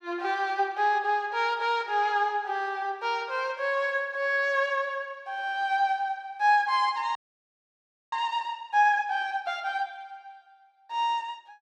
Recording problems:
frozen audio; at 7 s for 1 s

